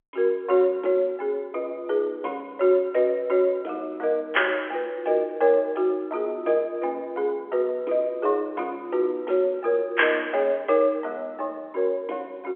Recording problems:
phone line; 320 Hz to 3.7 kHz, G.711

